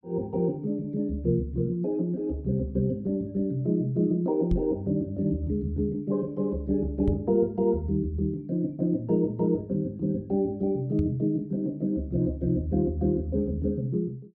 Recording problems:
knock on the microphone; at 4.5 s, at 7 s and at 11 s; peak +4 dB vs average level

